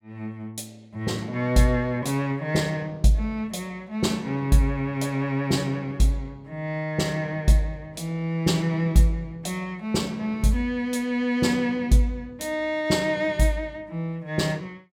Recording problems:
none

